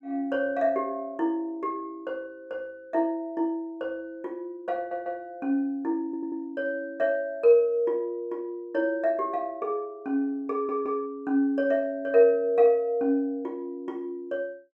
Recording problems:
audio stuttering; at 5 s, at 6 s and at 11 s

